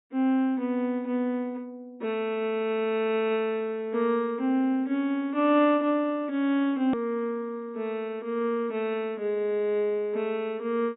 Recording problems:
low-pass filter; nothing above 4 kHz
hard cut with a click; at 7 s

